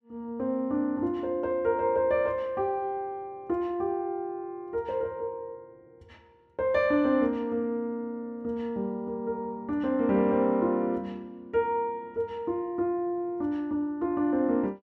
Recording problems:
none

